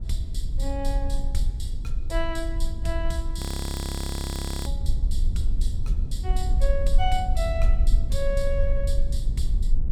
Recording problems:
low-frequency rumble; below 52 Hz, SNR -5 dB
frozen audio; at 3.5 s for 1.5 s

